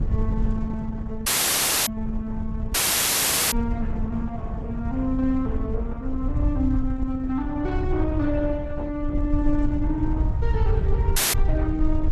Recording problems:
lossy compression; Opus, log-spectral distance 2 dB
low-frequency rumble; below 82 Hz, SNR 1 dB
wind on the microphone; below 160 Hz, SNR 9 dB
audio cutting out; at 1.5 s for 0.5 s, at 2.5 s for 1 s and at 11 s

